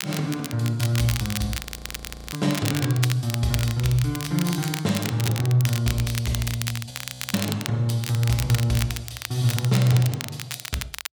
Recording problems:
crackle; vinyl, SNR 8 dB
audio freezing; at 1.5 s for 0.5 s and at 7 s

